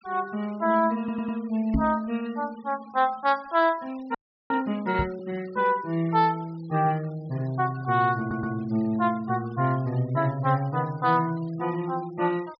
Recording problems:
treble cut off; nothing above 5.5 kHz
denoising artefacts; signal-to-artefact ratio 23 dB
audio stuttering; at 1 s and at 8 s
microphone bump; at 1.5 s and at 5 s; peak +4 dB vs average level
frozen audio; at 4 s

